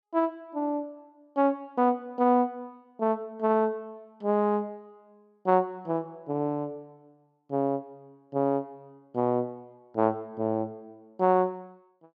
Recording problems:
none

